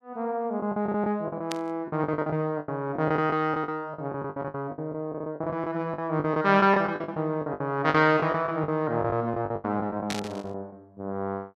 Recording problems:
packet loss; 17% of the sound replaced, filled with the last packet
burst of static; at 1.5 s and at 10 s; peak -2 dB vs average level

